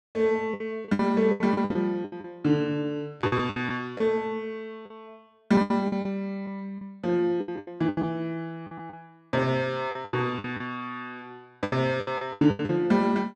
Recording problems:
packet loss; 14% of the sound replaced, filled with the last packet

